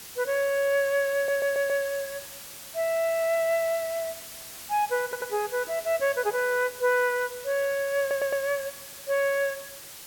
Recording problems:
hiss; slope 0 dB per octave, SNR 13 dB
audio stuttering; at 1 s, at 5 s and at 8 s

